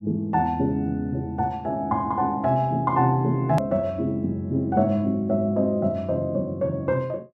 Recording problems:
click at an edit; at 3.5 s

